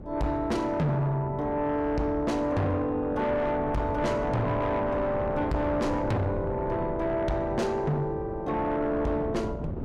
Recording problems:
distorted audio; soft clipping, signal-to-distortion ratio 7 dB
wind noise; below 340 Hz, SNR 10 dB

